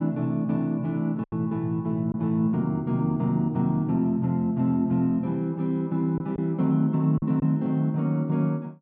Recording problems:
lost packets; 2% of the sound replaced, filled with silence

